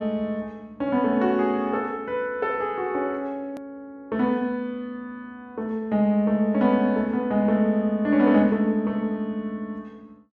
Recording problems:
hard cut with a click; at 3.5 s

